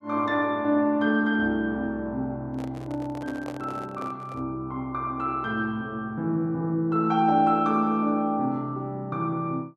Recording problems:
handling noise; from 2.5 to 4.5 s; peak -7 dB vs average level

